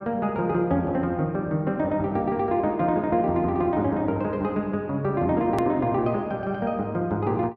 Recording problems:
edit click; at 5.5 s

